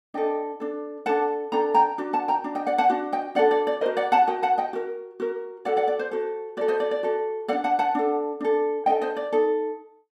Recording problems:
none

